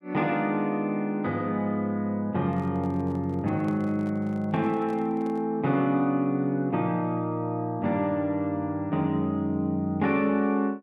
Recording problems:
handling noise; from 2.5 to 5.5 s; peak -11 dB vs average level

